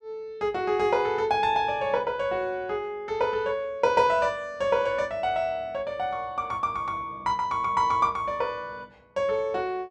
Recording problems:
none

